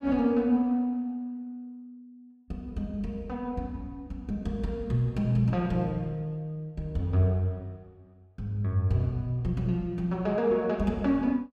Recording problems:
none

